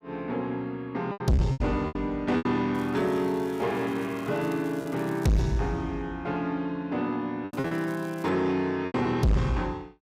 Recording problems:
distorted audio; soft clipping, signal-to-distortion ratio 6 dB
packet loss; 6% of the sound replaced, filled with repeated pitch periods
crackling; from 3 to 5.5 s and at 7.5 s; loose cable, SNR 24 dB

